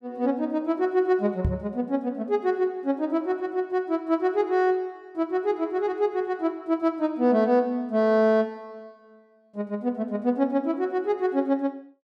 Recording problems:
microphone bump; at 1.5 s; peak +3 dB vs average level

